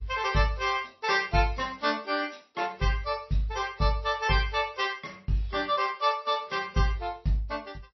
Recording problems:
lossy compression; MP2, then MP3, log-spectral distance 5 dB, nothing above 5.2 kHz

